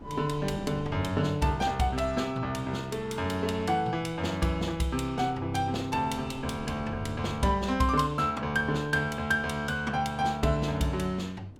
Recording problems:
wind on the microphone; below 330 Hz, SNR 18 dB

